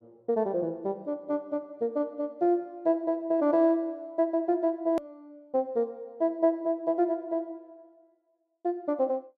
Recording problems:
hard cut with a click; at 5 s

